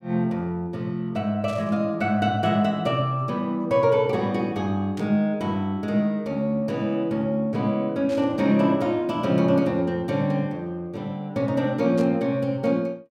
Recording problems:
burst of static; 4 times, first at 1.5 s; peak -14 dB vs average level

